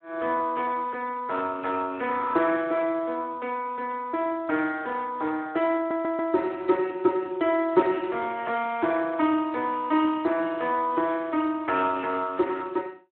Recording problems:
phone line; 260 Hz to 3 kHz, Speex
audio stuttering; at 6 s

